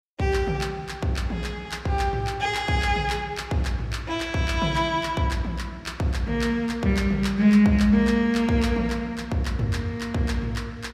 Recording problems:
none

